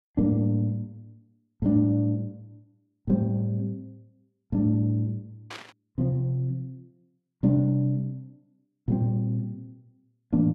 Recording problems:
static burst; at 5.5 s; peak -8 dB vs average level

